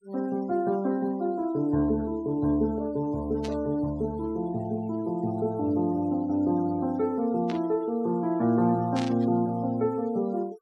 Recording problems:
noise reduction artefacts; signal-to-artefact ratio 25 dB
burst of static; at 3.5 s, at 7.5 s and at 9 s; peak -6 dB vs average level

